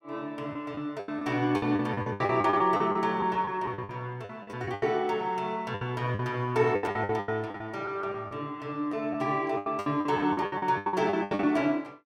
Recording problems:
lost packets; 17% of the sound replaced, filled with the last packet

